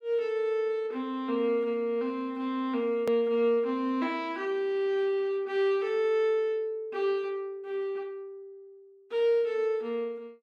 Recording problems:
hard cut with a click; at 3 s

